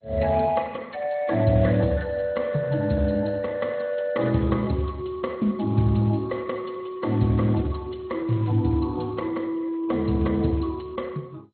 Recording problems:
lossy codec; Speex, then MP2, log-spectral distance 4 dB, nothing above 4.2 kHz

